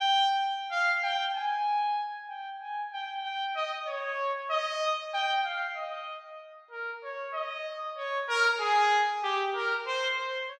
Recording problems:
none

